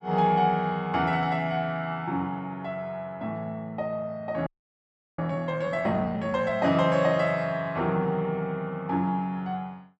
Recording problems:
audio freezing; at 4.5 s for 0.5 s

